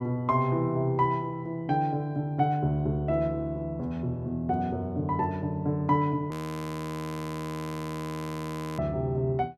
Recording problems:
audio freezing; at 6.5 s for 2.5 s

